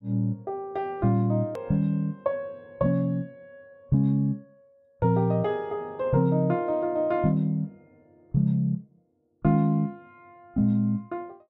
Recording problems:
click at an edit; at 1.5 s

